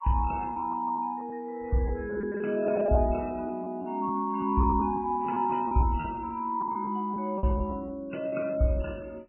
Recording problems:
lossy codec; MP3, log-spectral distance 2 dB, nothing above 2.7 kHz
lost packets; 9% of the sound replaced, filled with repeated pitch periods

